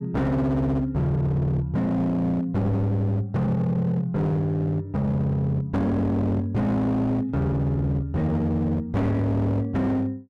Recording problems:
distorted audio; hard clipping, signal-to-distortion ratio 8 dB

